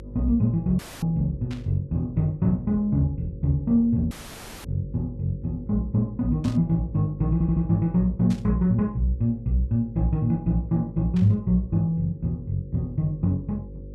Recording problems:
electrical hum; 50 Hz, harmonics up to 550 Hz, SNR 17 dB
dropout; at 1 s and at 4 s for 0.5 s
static burst; 4 times, first at 1.5 s; peak -13 dB vs average level
stutter; at 7.5 s

